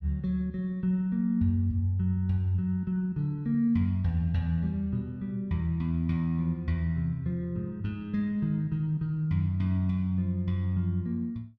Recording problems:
none

